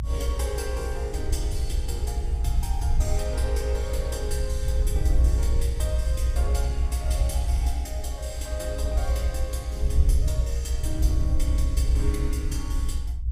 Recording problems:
rumble; below 66 Hz, SNR -8 dB

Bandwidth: 15.5 kHz